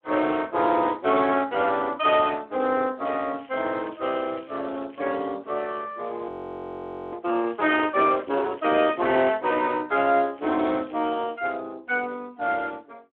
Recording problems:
telephone audio; 220 Hz to 3.3 kHz, Speex
crackle; from 3 to 5 s, from 7.5 to 9 s and from 10 to 11 s; loose cable, SNR 27 dB
audio freezing; at 6.5 s for 1 s

